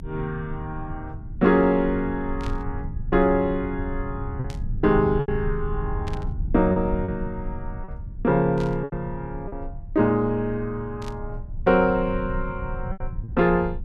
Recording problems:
rumble; below 100 Hz, strongest tone 26 Hz, SNR 10 dB
packet loss; 4% of the sound replaced, filled with repeated pitch periods
burst of static; 5 times, first at 2.5 s; peak -12 dB vs average level

